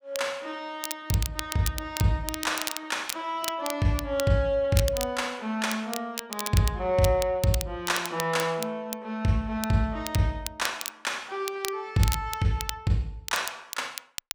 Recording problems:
crackle; vinyl, SNR 8 dB

